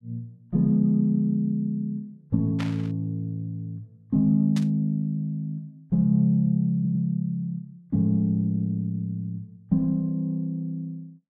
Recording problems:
burst of static; at 2.5 s and at 4.5 s; peak -7 dB vs average level
stutter; at 7 s

